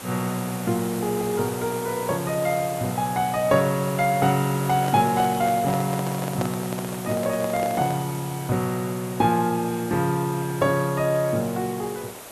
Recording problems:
hiss; SNR 12 dB
microphone handling noise; from 4.5 to 8 s; peak -2 dB vs average level

